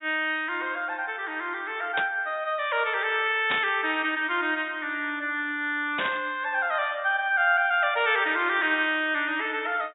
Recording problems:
low-pass filter; nothing above 4 kHz
burst of static; at 2 s, at 3.5 s and at 6 s; peak 0 dB vs average level

